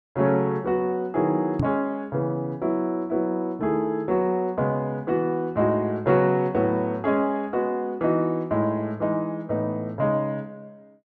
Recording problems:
microphone thump; at 1.5 s; peak +3 dB vs average level

